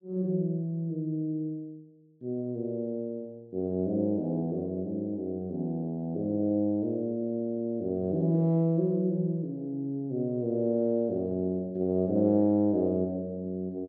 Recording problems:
none

